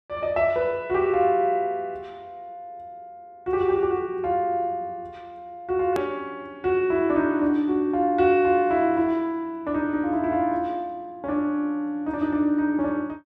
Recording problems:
edit click; at 6 s

